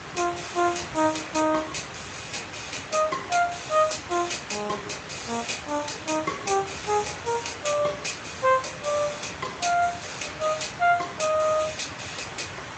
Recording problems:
lossy compression; Speex, log-spectral distance 11 dB, nothing above 7.8 kHz
background hiss; SNR 10 dB

